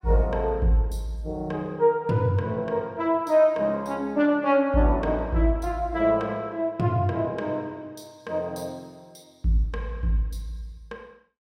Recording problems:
none

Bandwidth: 16 kHz